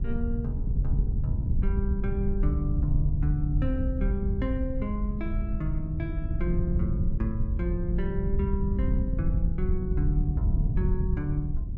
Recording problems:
treble missing; nothing above 8 kHz
wind on the microphone; below 84 Hz, SNR -4 dB

